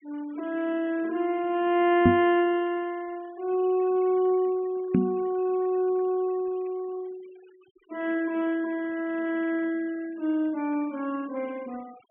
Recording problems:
treble cut off; nothing above 3.1 kHz
denoising artefacts; signal-to-artefact ratio 26 dB
knock on the microphone; at 2 s and at 5 s; peak +10 dB vs average level

